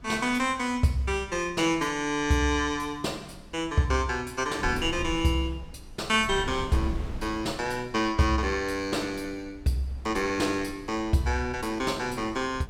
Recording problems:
wind on the microphone; below 160 Hz, SNR 16 dB

